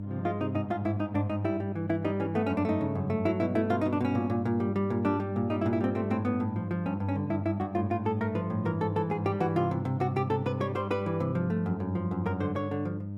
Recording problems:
hum; 50 Hz, harmonics up to 600 Hz, SNR 7 dB

